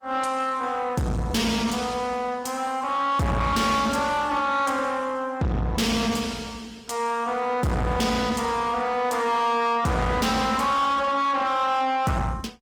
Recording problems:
lossy codec; Opus, log-spectral distance 3 dB, nothing above 19 kHz
distortion; soft clipping, signal-to-distortion ratio 6 dB

